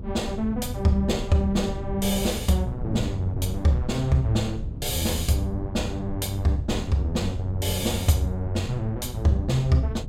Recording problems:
low-frequency rumble; below 98 Hz, SNR 12 dB
wind noise; below 170 Hz, SNR 11 dB

